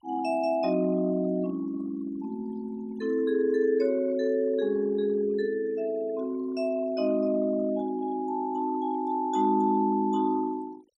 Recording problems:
noise reduction artefacts; signal-to-artefact ratio 24 dB

